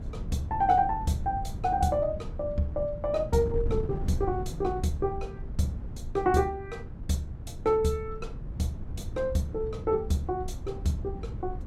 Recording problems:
wind on the microphone; below 130 Hz, SNR 8 dB

